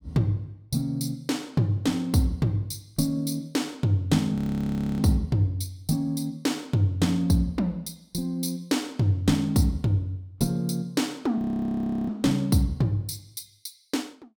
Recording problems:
frozen audio; at 4.5 s for 0.5 s and at 11 s for 0.5 s

